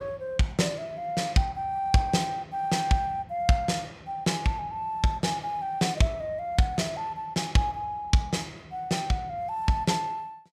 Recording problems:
none

